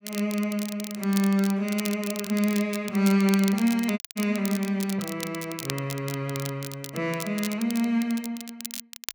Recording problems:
crackling; vinyl, SNR 11 dB
audio cutting out; at 4 s

